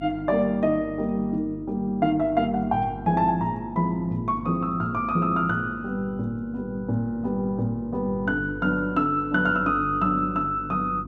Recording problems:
mains hum; 50 Hz, harmonics up to 350 Hz, SNR 15 dB

